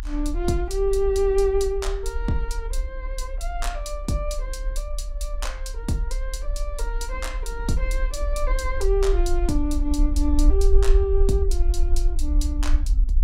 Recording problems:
low-frequency rumble; below 48 Hz, SNR 0 dB

